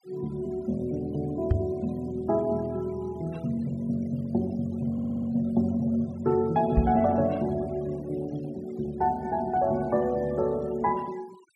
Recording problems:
noise reduction artefacts; signal-to-artefact ratio 25 dB
microphone thump; at 1.5 s and at 7 s; peak +8 dB vs average level
audio stuttering; at 5 s

